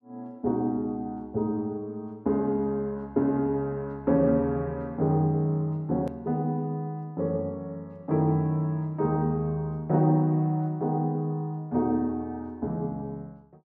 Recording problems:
hard cut with a click; at 6 s

